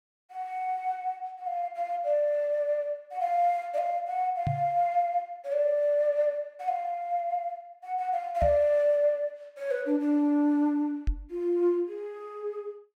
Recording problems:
microphone thump; at 4.5 s, at 8.5 s and at 11 s; peak +2 dB vs average level

